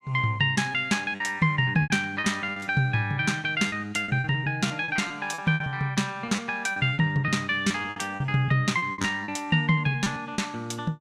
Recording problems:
lost packets; 12% of the sound replaced, filled with repeated pitch periods

